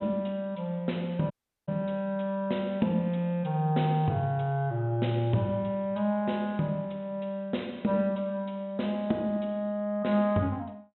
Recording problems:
treble cut off; nothing above 3.8 kHz
dropout; at 1.5 s

